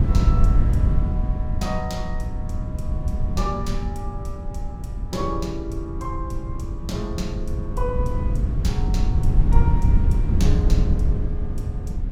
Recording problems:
wind noise; below 96 Hz, SNR -8 dB

